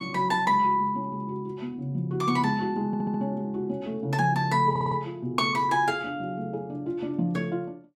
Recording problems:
audio stuttering; at 3 s and at 4.5 s

